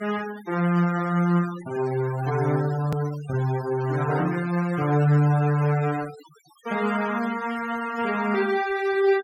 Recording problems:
noise reduction artefacts; signal-to-artefact ratio 16 dB
hard cut with a click; at 3 s

